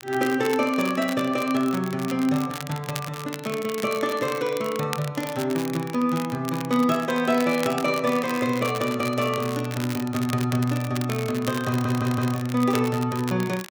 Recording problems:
crackling; vinyl, SNR 13 dB
stutter; at 12 s

